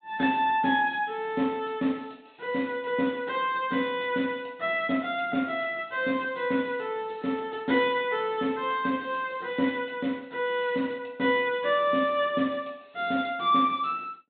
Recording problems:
treble cut off; nothing above 4 kHz

